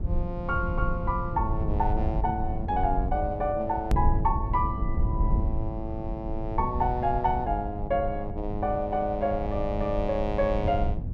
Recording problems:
low-frequency rumble; below 96 Hz, SNR 3 dB
edit click; at 4 s

